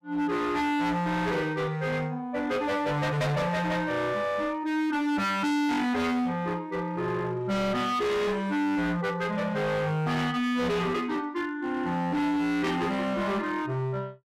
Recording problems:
distorted audio; hard clipping, signal-to-distortion ratio 6 dB

